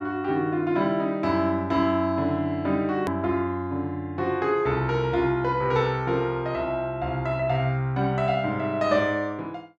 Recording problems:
hard cut with a click; at 3 s

